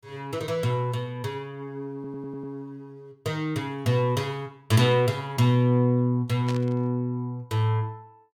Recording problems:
stutter; at 2 s
static burst; at 6.5 s; peak -7 dB vs average level

